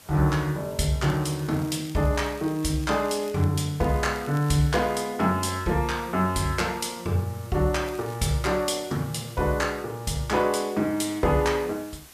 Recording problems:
background hiss; slope -1 dB per octave, SNR 22 dB
crackle; from 1 to 3.5 s, from 4 to 5 s and at 8 s; loose cable, SNR 23 dB

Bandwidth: 14.5 kHz